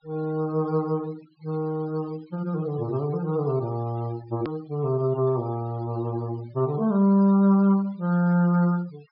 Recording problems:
low-pass filter; nothing above 5.5 kHz
denoising artefacts; signal-to-artefact ratio 25 dB
click at an edit; at 4.5 s

